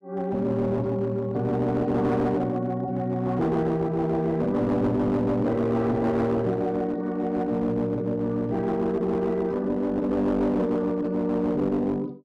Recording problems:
distorted audio; hard clipping, uneven, signal-to-distortion ratio 11 dB

